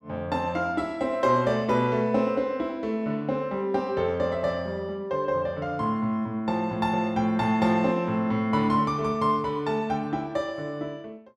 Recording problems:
none

